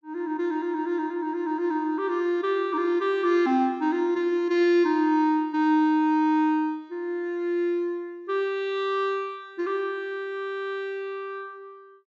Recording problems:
treble missing; nothing above 8 kHz

